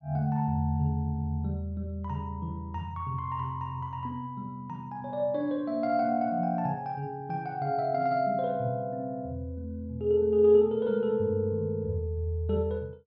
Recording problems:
none

